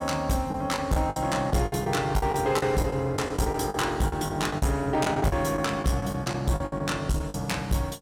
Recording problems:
distortion; hard clipping, uneven, signal-to-distortion ratio 11 dB
packet loss; 13% of the sound replaced, filled with the last packet

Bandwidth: 16.5 kHz